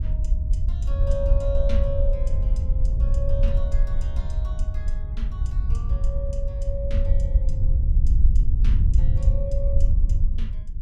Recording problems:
low-frequency rumble; below 62 Hz, SNR -12 dB

